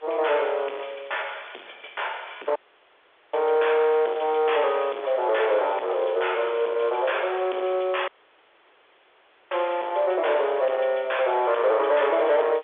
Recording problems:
telephone audio; 320 Hz to 3.6 kHz, G.711
distorted audio; soft clipping, signal-to-distortion ratio 10 dB
background hiss; SNR 28 dB
crackle; at 0.5 s, from 4 to 6.5 s and at 7 s; loose cable, SNR 27 dB
dropout; at 2.5 s for 1 s and at 8 s for 1.5 s

